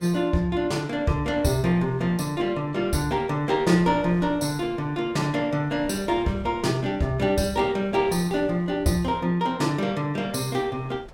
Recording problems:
wind on the microphone; below 600 Hz, SNR 22 dB

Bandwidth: 16 kHz